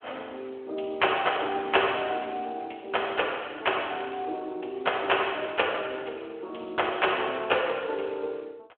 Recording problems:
telephone audio; 280 Hz to 3.4 kHz, Speex

